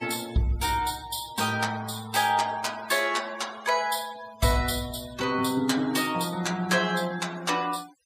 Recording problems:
denoising artefacts; signal-to-artefact ratio 17 dB

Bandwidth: 15.5 kHz